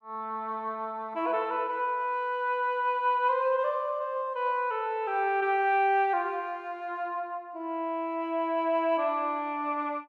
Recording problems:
none

